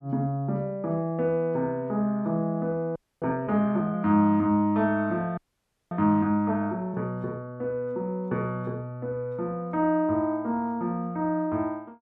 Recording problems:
frozen audio; at 3 s and at 5.5 s for 0.5 s

